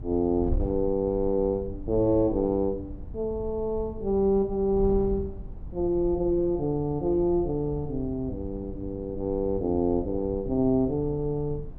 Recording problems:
wind noise; below 86 Hz, SNR 13 dB

